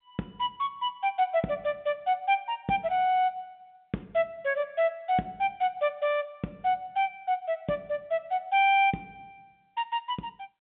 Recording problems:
telephone audio; 190 Hz to 3.7 kHz, G.711

